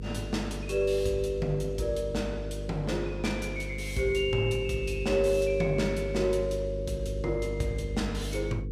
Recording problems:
hum; 50 Hz, harmonics up to 500 Hz, SNR 7 dB

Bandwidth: 15 kHz